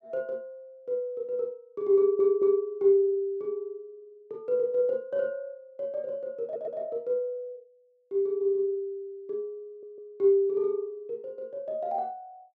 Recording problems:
audio stuttering; at 2 s, at 6.5 s and at 9.5 s

